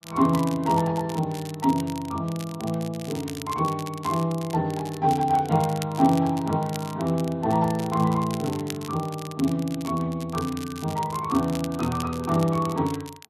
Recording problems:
lossy codec; Speex, log-spectral distance 2 dB
crackle; vinyl, SNR 16 dB

